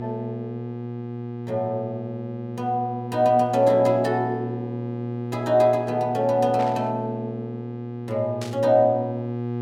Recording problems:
hum; 60 Hz, harmonics up to 1.2 kHz, SNR 9 dB
burst of static; at 6.5 s and at 8.5 s; peak -9 dB vs average level

